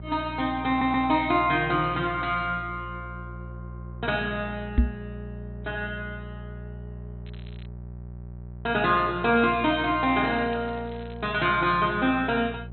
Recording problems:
low-pass filter; nothing above 4.1 kHz
electrical hum; 60 Hz, harmonics up to 600 Hz, SNR 14 dB
stutter; at 0.5 s
knock on the microphone; at 5 s; peak +7 dB vs average level
crackling; at 7.5 s and from 9.5 to 11 s; loose cable, SNR 27 dB

